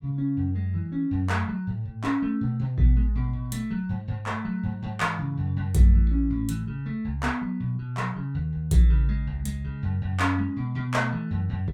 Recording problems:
none

